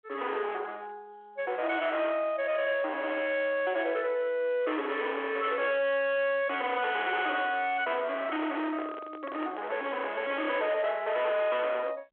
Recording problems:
telephone audio; 320 Hz to 3.7 kHz, G.726
distortion; hard clipping, signal-to-distortion ratio 7 dB
handling noise; from 8 to 10 s; peak -7 dB vs average level

